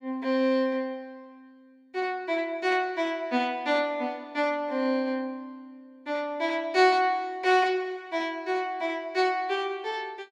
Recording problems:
none

